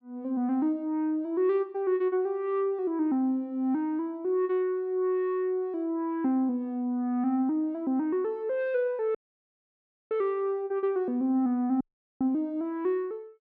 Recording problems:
audio cutting out; at 9 s for 1 s and at 12 s

